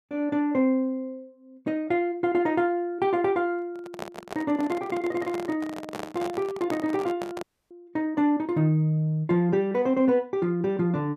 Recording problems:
microphone handling noise; from 3.5 to 7.5 s; peak -5 dB vs average level
dropout; at 7.5 s

